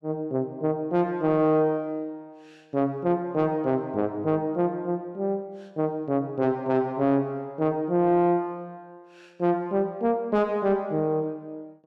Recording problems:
distorted audio; soft clipping, signal-to-distortion ratio 11 dB

